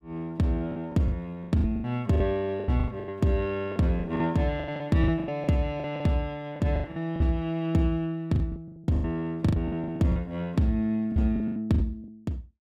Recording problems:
lost packets; 17% of the sound replaced, filled with the last packet

